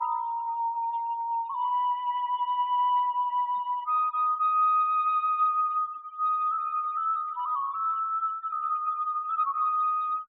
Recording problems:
low-pass filter; nothing above 4 kHz
noise reduction artefacts; signal-to-artefact ratio 25 dB

